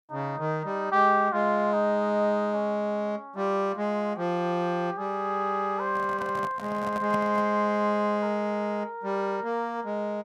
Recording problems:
microphone handling noise; from 6 to 7.5 s; peak -5 dB vs average level

